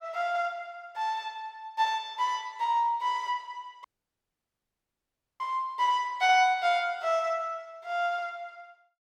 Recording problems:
dropout; at 4 s for 1.5 s

